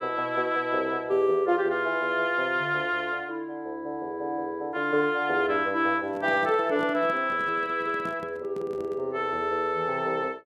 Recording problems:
microphone handling noise; from 6 to 9 s; peak -10 dB vs average level

